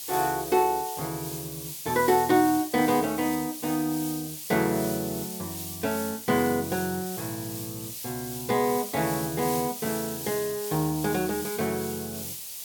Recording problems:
hiss; SNR 7 dB

